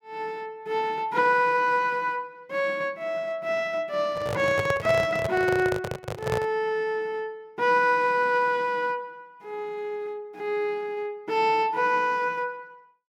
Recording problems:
microphone handling noise; from 4 to 6.5 s; peak +1 dB vs average level

